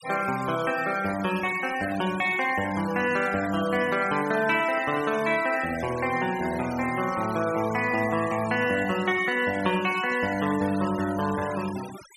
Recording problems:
denoising artefacts; signal-to-artefact ratio 15 dB

